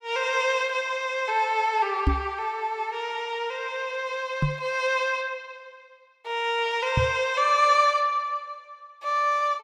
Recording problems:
knock on the microphone; at 2 s, at 4.5 s and at 7 s; peak +6 dB vs average level

